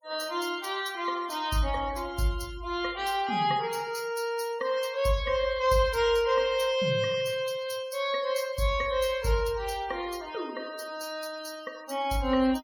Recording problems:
noise reduction artefacts; signal-to-artefact ratio 18 dB

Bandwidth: 17.5 kHz